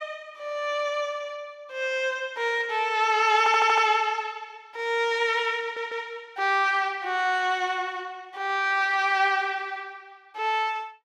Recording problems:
stutter; at 3.5 s and at 5.5 s

